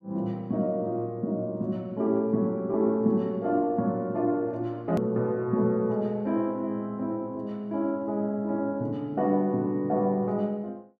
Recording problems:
hard cut with a click; at 5 s

